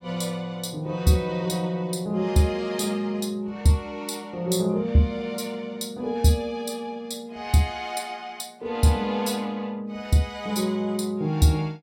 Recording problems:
none

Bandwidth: 16 kHz